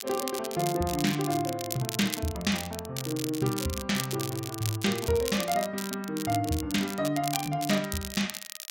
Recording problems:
crackling; vinyl, SNR 7 dB

